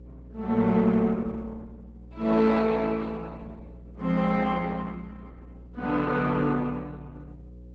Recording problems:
lossy compression; Opus, log-spectral distance 3 dB, nothing above 7.3 kHz
electrical hum; 60 Hz, harmonics up to 540 Hz, SNR 21 dB

